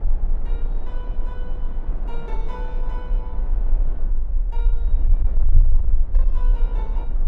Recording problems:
distortion; soft clipping, signal-to-distortion ratio 11 dB
low-frequency rumble; below 36 Hz, strongest tone 18 Hz, SNR -17 dB
wind noise; below 480 Hz, SNR -2 dB

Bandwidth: 12.5 kHz